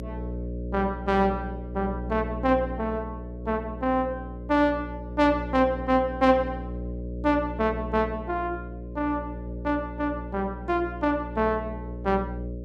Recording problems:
hum; 60 Hz, harmonics up to 600 Hz, SNR 9 dB

